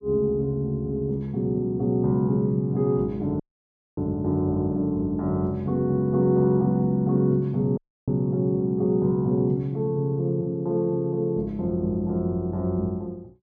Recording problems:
dropout; at 3.5 s for 0.5 s and at 8 s

